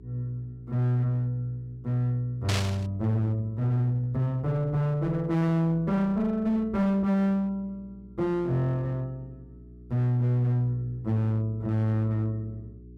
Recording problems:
distortion; hard clipping, uneven, signal-to-distortion ratio 11 dB
electrical hum; 60 Hz, harmonics up to 420 Hz, SNR 21 dB
static burst; at 2.5 s; peak 0 dB vs average level

